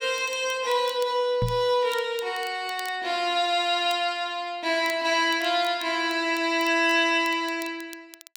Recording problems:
crackling; vinyl, SNR 22 dB
microphone bump; at 1.5 s; peak 0 dB vs average level

